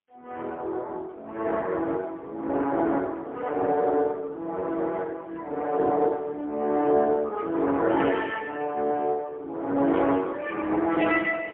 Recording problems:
phone line; 240 Hz to 3.3 kHz, AMR-NB, then MP3

